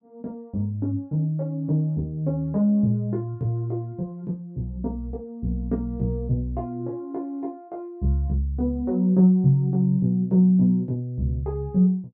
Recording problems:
none

